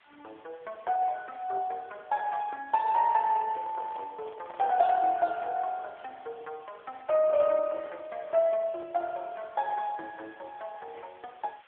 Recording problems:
telephone audio; 320 Hz to 3.5 kHz, AMR-NB
background hiss; SNR 30 dB
microphone handling noise; from 3 to 5 s; peak -12 dB vs average level

